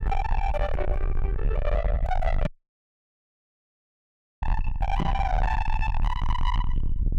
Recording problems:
distortion; soft clipping, signal-to-distortion ratio 6 dB
rumble; below 70 Hz, SNR -1 dB
knock on the microphone; at 2.5 s and at 5 s; peak +11 dB vs average level
dropout; at 2.5 s for 2 s

